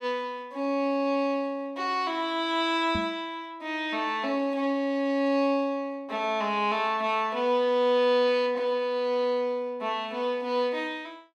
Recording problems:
microphone bump; at 3 s; peak -3 dB vs average level

